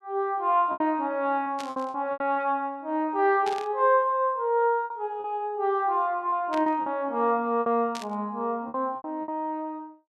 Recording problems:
packet loss; 8% of the sound replaced, filled with repeated pitch periods
burst of static; 4 times, first at 1.5 s; peak -7 dB vs average level

